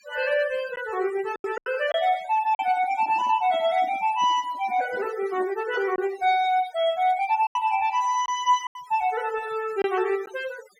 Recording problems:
noise reduction artefacts; signal-to-artefact ratio 18 dB
packet loss; 4% of the sound replaced, filled with silence
handling noise; from 2.5 to 6 s; peak -14 dB vs average level

